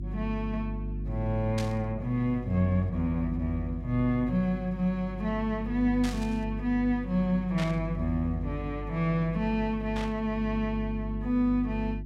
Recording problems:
mains hum; 50 Hz, harmonics up to 350 Hz, SNR 8 dB
static burst; 4 times, first at 1.5 s; peak -5 dB vs average level

